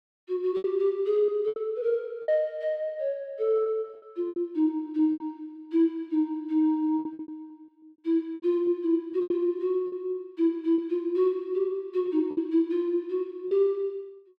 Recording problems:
packet loss; 8% of the sound replaced, filled with repeated pitch periods

